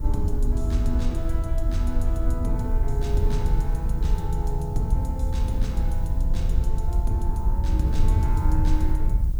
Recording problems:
background hiss; slope +2 dB per octave, SNR 23 dB
low-frequency rumble; below 56 Hz, SNR 5 dB
wind on the microphone; below 68 Hz, SNR -6 dB

